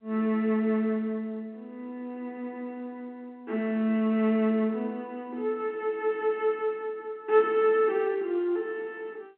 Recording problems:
phone line; 240 Hz to 3.5 kHz, G.711

